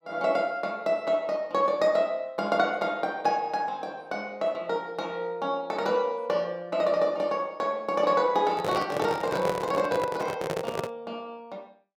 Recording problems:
handling noise; from 8.5 to 11 s; peak +1 dB vs average level

